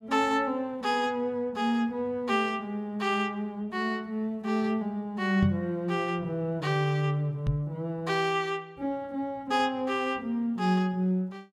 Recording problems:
knock on the microphone; at 5.5 s and at 7.5 s; peak +5 dB vs average level

